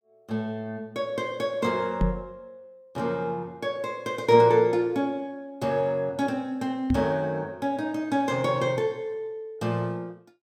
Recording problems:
microphone thump; at 2 s and at 7 s; peak +5 dB vs average level

